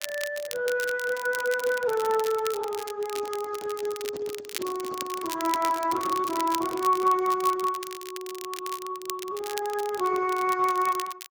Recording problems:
lossy compression; Speex, log-spectral distance 3 dB
crackle; vinyl, SNR 11 dB
microphone handling noise; from 3 to 7 s; peak -8 dB vs average level

